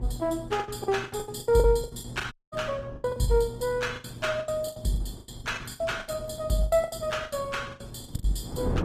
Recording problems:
lossy codec; Opus, log-spectral distance 4 dB, nothing above 14.7 kHz
electrical hum; 60 Hz, harmonics up to 600 Hz, SNR 17 dB
wind on the microphone; below 310 Hz, SNR 16 dB
packet loss; 21% of the sound replaced, filled with the last packet
audio cutting out; at 2.5 s

